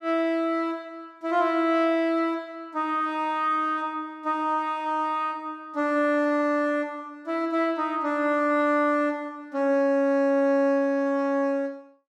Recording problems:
none

